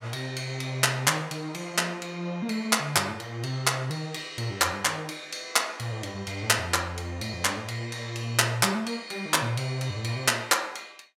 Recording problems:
none

